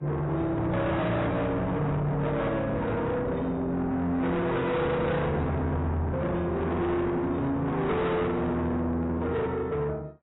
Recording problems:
lossy compression; AAC, then AAC, log-spectral distance 2 dB, nothing above 3.8 kHz
distortion; soft clipping, signal-to-distortion ratio 7 dB

